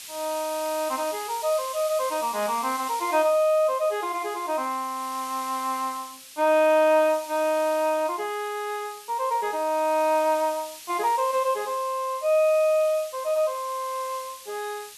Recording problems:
hiss; slope +4 dB per octave, SNR 15 dB

